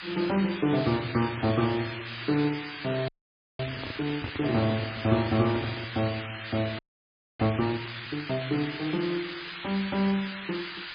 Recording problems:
codec artefacts; MP2, then MP3, log-spectral distance 19 dB
background hiss; SNR 8 dB
handling noise; from 3 to 6 s; peak -3 dB vs average level
frozen audio; at 3 s for 0.5 s and at 7 s for 0.5 s

